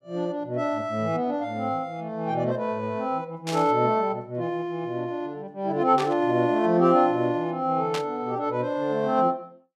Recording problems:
burst of static; at 3.5 s, at 6 s and at 8 s; peak -3 dB vs average level

